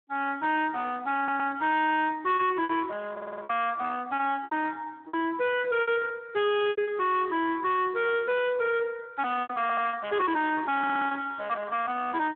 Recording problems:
phone line; 300 Hz to 3.6 kHz, Speex
distorted audio; soft clipping, signal-to-distortion ratio 6 dB
packet loss; 8% of the sound replaced, filled with repeated pitch periods
stutter; 4 times, first at 1 s

